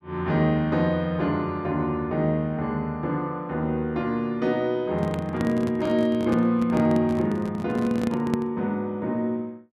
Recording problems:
microphone handling noise; from 5 to 8.5 s; peak +1 dB vs average level

